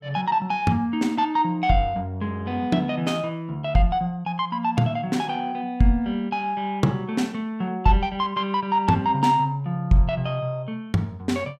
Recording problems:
none

